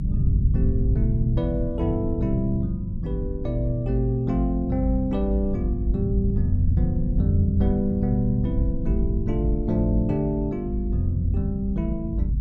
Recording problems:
rumble; below 96 Hz, strongest tone 52 Hz, SNR 2 dB

